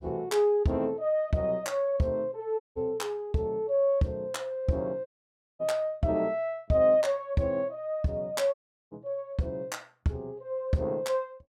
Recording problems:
audio cutting out; at 2.5 s, at 5 s for 0.5 s and at 8.5 s

